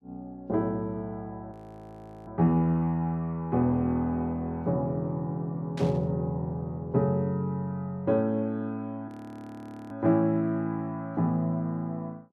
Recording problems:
frozen audio; at 1.5 s for 1 s and at 9 s for 1 s
static burst; at 6 s; peak -10 dB vs average level

